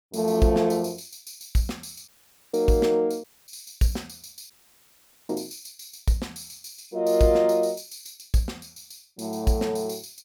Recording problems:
audio cutting out; at 2 s, at 3 s and at 4.5 s for 1 s

